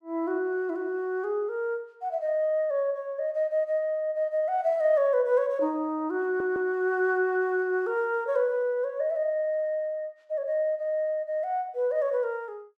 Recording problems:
stutter; at 6 s

